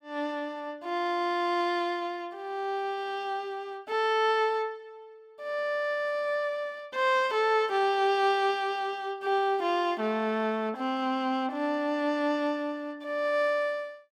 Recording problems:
none

